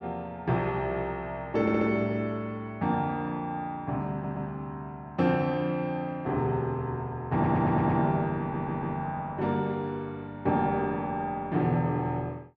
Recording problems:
audio stuttering; 4 times, first at 1.5 s

